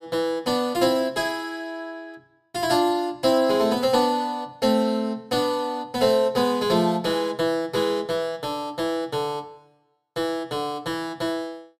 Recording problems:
none

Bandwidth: 15.5 kHz